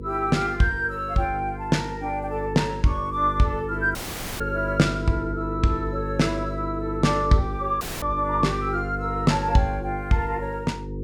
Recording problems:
hum; 50 Hz, harmonics up to 500 Hz, SNR 8 dB
dropout; at 4 s and at 8 s

